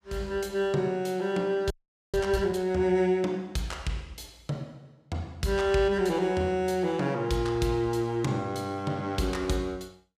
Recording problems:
audio freezing; at 1.5 s

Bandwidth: 14.5 kHz